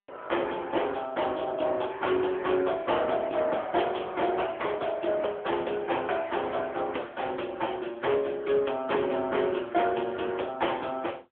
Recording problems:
phone line; 300 Hz to 3.5 kHz, AMR-NB

